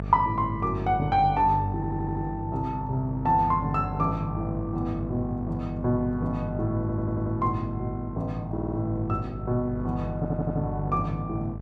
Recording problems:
hum; 50 Hz, harmonics up to 900 Hz, SNR 7 dB
audio stuttering; 4 times, first at 2 s

